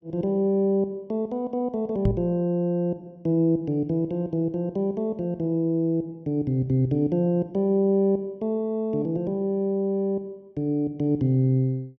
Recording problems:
microphone bump; at 2 s; peak +4 dB vs average level

